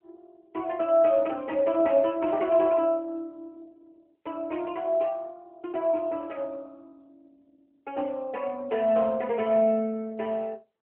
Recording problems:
telephone audio; 240 Hz to 3.3 kHz, AMR-NB

